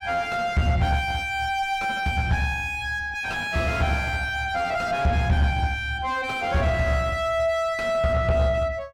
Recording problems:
distortion; soft clipping, signal-to-distortion ratio 6 dB

